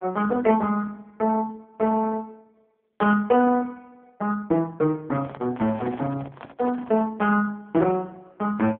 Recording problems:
telephone audio; 150 Hz to 3.2 kHz, AMR-NB
microphone handling noise; from 5 to 7 s; peak -7 dB vs average level

